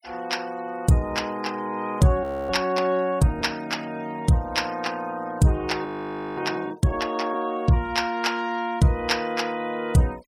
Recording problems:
denoising artefacts; signal-to-artefact ratio 23 dB
audio freezing; at 2 s and at 6 s for 0.5 s

